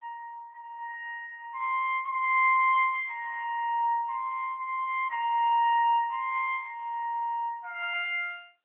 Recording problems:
telephone audio; 990 Hz to 2.1 kHz, AMR-NB

